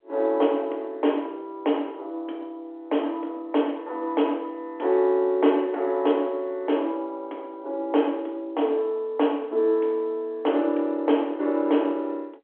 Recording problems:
phone line; 260 Hz to 3.4 kHz, G.711

